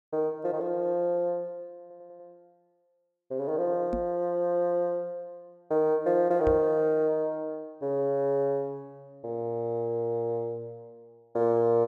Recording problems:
stutter; at 2 s
microphone thump; at 4 s and at 6.5 s; peak -1 dB vs average level

